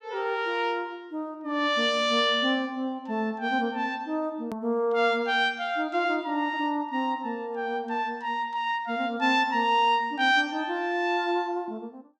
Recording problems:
edit click; at 4.5 s

